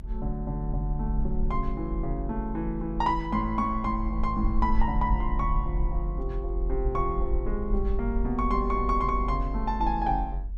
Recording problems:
rumble; below 46 Hz, strongest tone 44 Hz, SNR 3 dB

